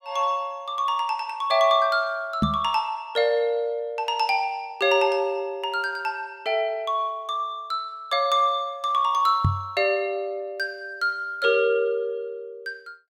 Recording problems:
microphone bump; at 2.5 s and at 9.5 s; peak +5 dB vs average level

